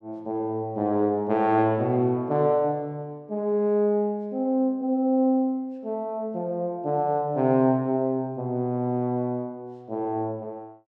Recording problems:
none

